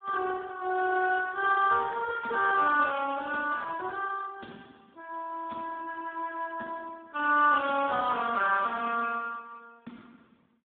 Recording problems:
telephone audio; 190 Hz to 2.5 kHz, Speex

